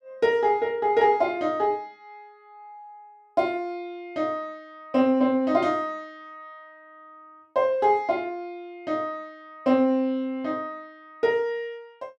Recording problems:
none

